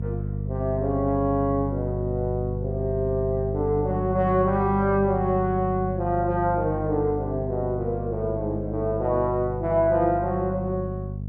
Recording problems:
hum; 50 Hz, harmonics up to 450 Hz, SNR 5 dB

